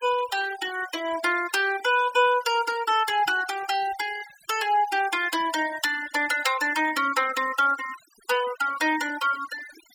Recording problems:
noise reduction artefacts; signal-to-artefact ratio 15 dB

